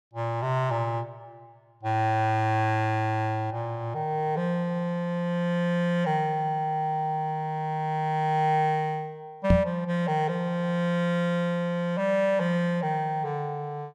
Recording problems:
microphone thump; at 9.5 s; peak +9 dB vs average level

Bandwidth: 15.5 kHz